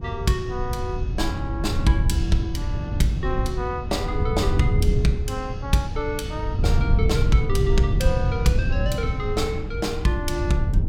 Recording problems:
wind noise; below 110 Hz, SNR 0 dB

